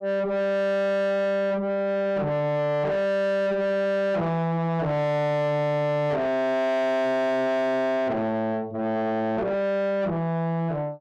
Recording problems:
distortion; soft clipping, signal-to-distortion ratio 7 dB

